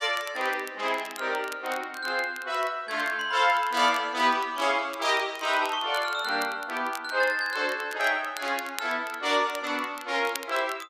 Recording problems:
crackle; vinyl, SNR 18 dB

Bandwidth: 14.5 kHz